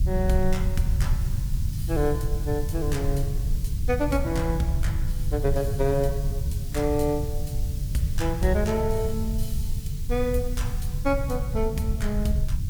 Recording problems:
hiss; slope +4 dB per octave, SNR 16 dB
low-frequency rumble; below 100 Hz, SNR 1 dB

